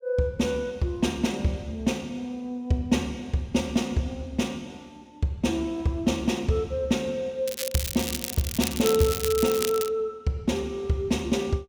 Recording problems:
crackle; from 7.5 to 10 s; loose cable, SNR 4 dB

